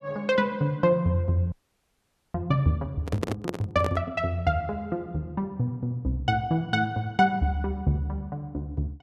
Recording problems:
audio freezing; at 1.5 s for 1 s
microphone handling noise; at 3 s; peak +2 dB vs average level

